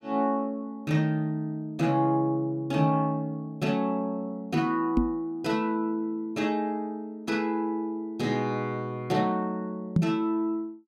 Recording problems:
knock on the microphone; at 5 s and at 10 s; peak +9 dB vs average level

